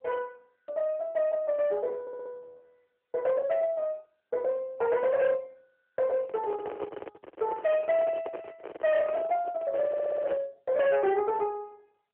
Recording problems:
phone line; 320 Hz to 3.4 kHz, AMR-NB
distorted audio; soft clipping, signal-to-distortion ratio 12 dB
audio stuttering; at 2 s and at 10 s
handling noise; from 6 to 10 s; peak -2 dB vs average level

